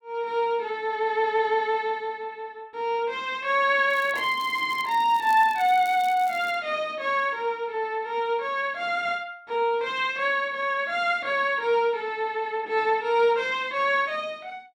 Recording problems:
crackle; from 4 to 6.5 s; loose cable, SNR 22 dB

